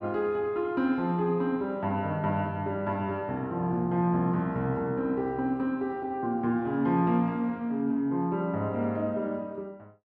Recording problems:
none

